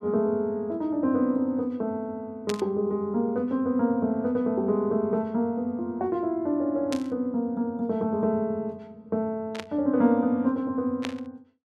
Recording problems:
burst of static; 4 times, first at 2.5 s; peak -3 dB vs average level

